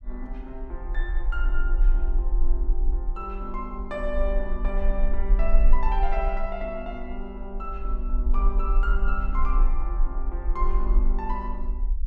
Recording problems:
low-frequency rumble; below 40 Hz, strongest tone 18 Hz, SNR -6 dB

